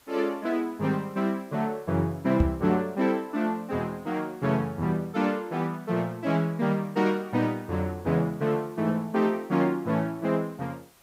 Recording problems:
hiss; slope -2 dB per octave, SNR 29 dB
knock on the microphone; at 2.5 s; peak +7 dB vs average level

